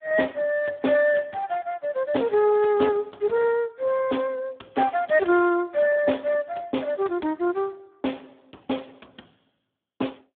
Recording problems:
phone line; 150 Hz to 3.5 kHz, Speex

